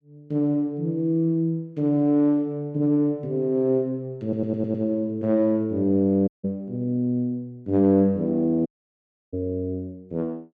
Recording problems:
stutter; at 4 s
audio cutting out; at 6.5 s and at 8.5 s for 0.5 s

